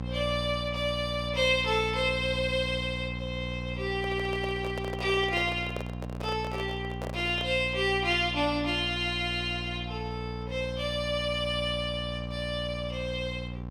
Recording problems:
electrical hum; 60 Hz, harmonics up to 1.3 kHz, SNR 7 dB
microphone handling noise; from 4 to 7.5 s; peak -4 dB vs average level

